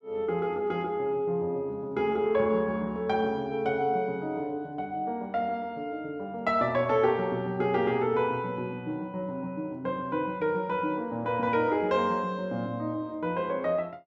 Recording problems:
none

